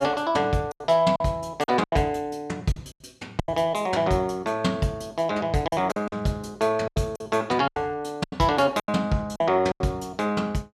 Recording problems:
packet loss; 9% of the sound replaced, filled with silence

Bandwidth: 13.5 kHz